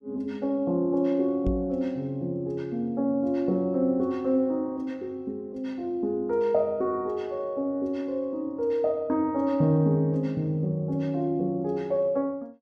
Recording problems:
microphone bump; at 1.5 s; peak 0 dB vs average level

